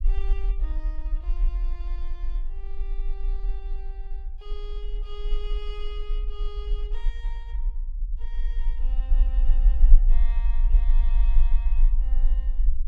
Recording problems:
low-frequency rumble; below 38 Hz, strongest tone 26 Hz, SNR -19 dB

